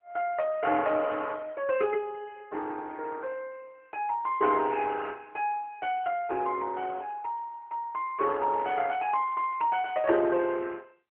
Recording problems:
phone line; 280 Hz to 3.1 kHz, AMR-NB

